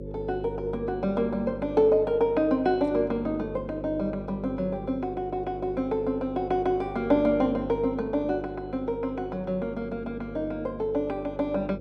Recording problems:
electrical hum; 50 Hz, harmonics up to 550 Hz, SNR 12 dB

